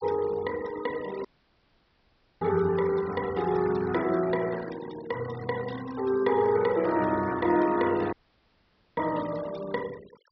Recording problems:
treble cut off; nothing above 5.5 kHz
noise reduction artefacts; signal-to-artefact ratio 17 dB
audio cutting out; at 1.5 s for 1 s and at 8 s for 1 s

